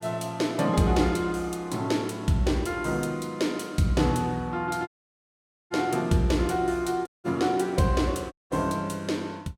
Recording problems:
dropout; at 5 s for 1 s, at 7 s and at 8.5 s

